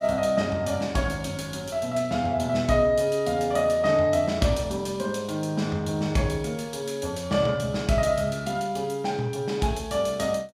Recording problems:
none

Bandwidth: 15 kHz